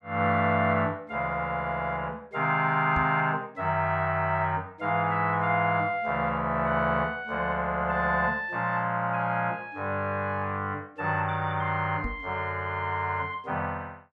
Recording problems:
microphone thump; at 3 s and at 12 s; peak -2 dB vs average level

